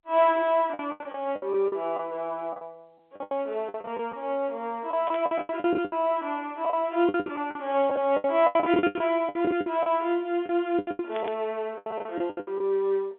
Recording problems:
phone line; 280 Hz to 3.6 kHz, G.711
packet loss; 17% of the sound replaced, filled with the last packet
burst of static; at 5 s, at 7 s and at 11 s; peak -9 dB vs average level

